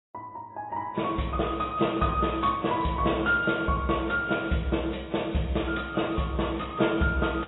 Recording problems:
lossy codec; AAC, log-spectral distance 5 dB, nothing above 3.8 kHz

